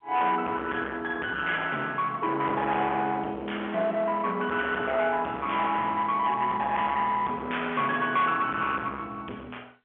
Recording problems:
phone line; 340 Hz to 3.4 kHz, G.711
distortion; hard clipping, uneven, signal-to-distortion ratio 8 dB

